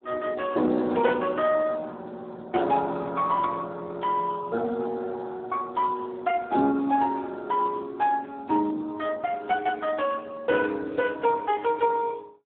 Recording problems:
telephone audio; 190 Hz to 2.8 kHz, Speex

